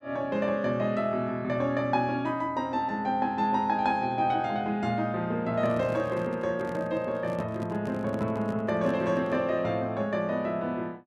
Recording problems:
handling noise; from 5.5 to 9.5 s; peak -6 dB vs average level

